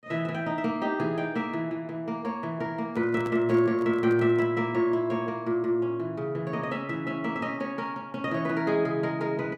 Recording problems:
microphone handling noise; from 3 to 4.5 s; peak -7 dB vs average level

